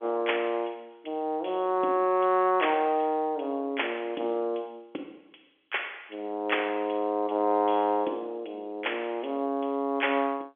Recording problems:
phone line; 240 Hz to 3.4 kHz, G.711

